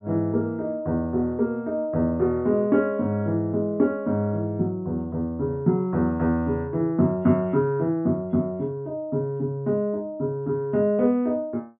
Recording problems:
treble cut off; nothing above 3.5 kHz

